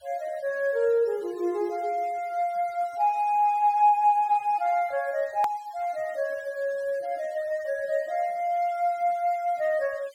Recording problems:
denoising artefacts; signal-to-artefact ratio 27 dB
hard cut with a click; at 5.5 s

